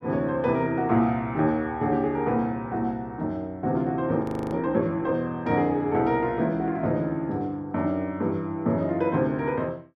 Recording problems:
frozen audio; at 4 s

